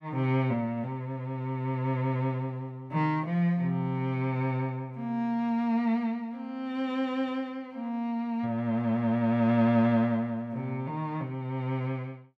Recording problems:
none

